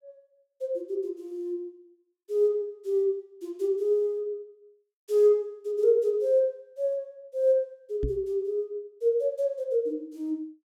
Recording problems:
knock on the microphone; at 8 s; peak 0 dB vs average level

